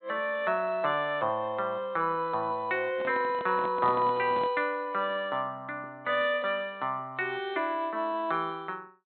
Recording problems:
treble cut off; nothing above 4 kHz
handling noise; from 3 to 4.5 s; peak -6 dB vs average level

